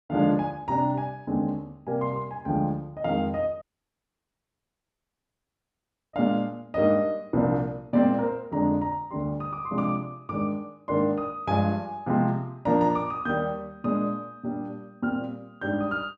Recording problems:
audio cutting out; at 3.5 s for 2.5 s

